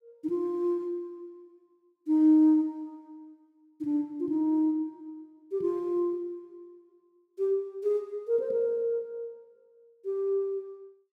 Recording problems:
none

